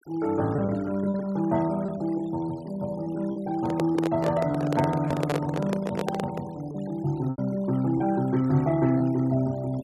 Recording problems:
noise reduction artefacts; signal-to-artefact ratio 21 dB
packet loss; 4% of the sound replaced, filled with repeated pitch periods
microphone handling noise; from 3.5 to 6.5 s; peak +2 dB vs average level

